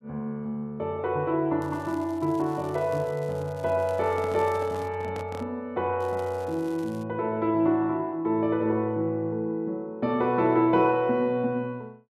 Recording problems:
crackle; from 1.5 to 5 s and from 6 to 7 s; loose cable, SNR 26 dB
microphone handling noise; from 4 to 5.5 s; peak -8 dB vs average level

